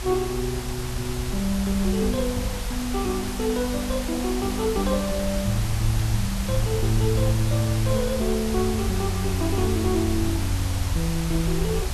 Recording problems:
background hiss; SNR 8 dB
rumble; below 64 Hz, SNR 9 dB
wind on the microphone; below 90 Hz, SNR 9 dB

